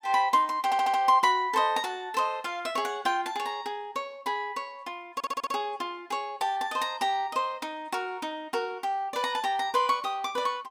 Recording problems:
audio stuttering; at 0.5 s and at 5 s

